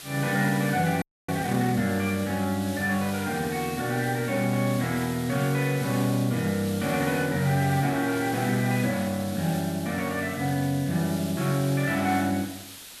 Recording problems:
hiss; slope +1 dB per octave, SNR 13 dB
audio freezing; at 1 s

